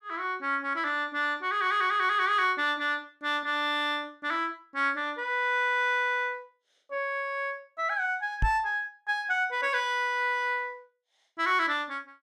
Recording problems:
microphone thump; at 8.5 s; peak +3 dB vs average level

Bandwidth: 14.5 kHz